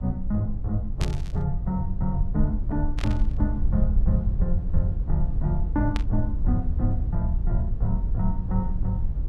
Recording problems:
rumble; below 68 Hz, SNR 0 dB
static burst; at 1 s, at 3 s and at 6 s; peak -1 dB vs average level

